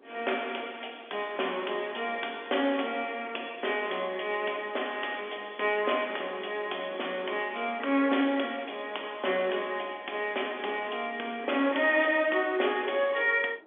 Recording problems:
telephone audio; 300 Hz to 3.5 kHz, G.711
wind on the microphone; below 670 Hz, SNR 23 dB

